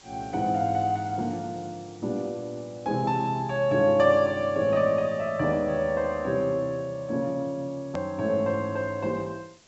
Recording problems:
low-pass filter; nothing above 7.8 kHz
background hiss; slope -1 dB per octave, SNR 27 dB
edit click; at 8 s

